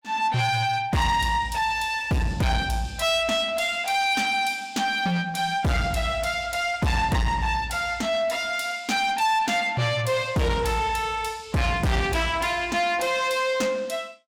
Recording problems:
distorted audio; soft clipping, signal-to-distortion ratio 8 dB

